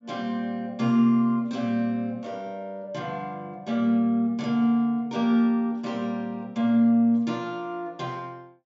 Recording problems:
treble missing; nothing above 8 kHz

